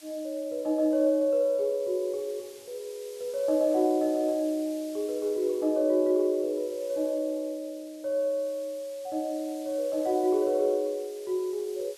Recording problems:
background hiss; SNR 22 dB

